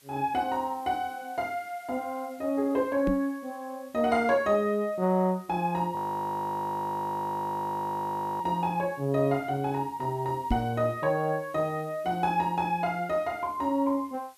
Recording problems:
background hiss; slope +1 dB per octave, SNR 27 dB
microphone bump; at 3 s and at 11 s; peak +4 dB vs average level
audio freezing; at 6 s for 2.5 s

